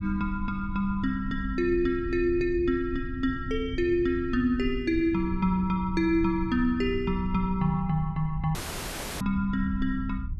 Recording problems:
low-frequency rumble; below 94 Hz, SNR 11 dB
audio cutting out; at 8.5 s for 0.5 s

